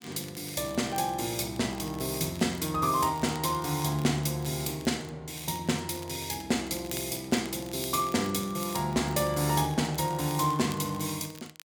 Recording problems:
crackle; vinyl, SNR 19 dB

